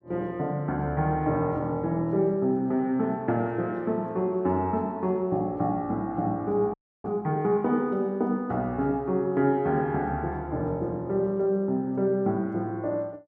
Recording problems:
audio freezing; at 6.5 s

